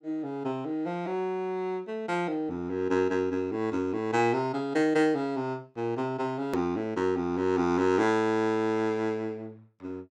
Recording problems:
edit click; at 6.5 s

